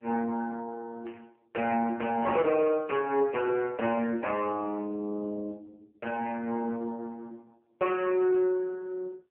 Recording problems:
telephone audio; 220 Hz to 2.9 kHz, AMR-NB
burst of static; at 1 s; peak -18 dB vs average level

